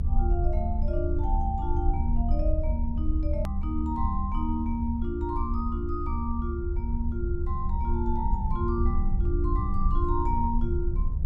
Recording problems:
low-frequency rumble; below 72 Hz, SNR -3 dB
click at an edit; at 3.5 s

